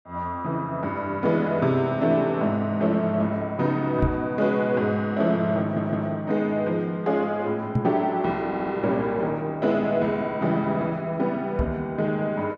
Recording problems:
microphone bump; at 4 s, at 8 s and at 12 s; peak +3 dB vs average level
stutter; at 5.5 s and at 8.5 s

